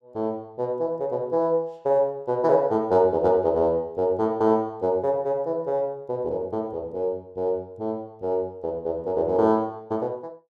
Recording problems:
none

